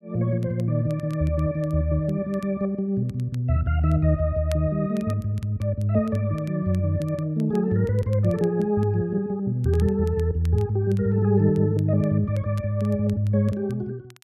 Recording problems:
crackle; vinyl, SNR 29 dB

